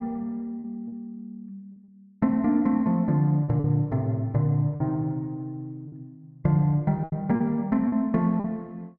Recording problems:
lost packets; 6% of the sound replaced, filled with repeated pitch periods

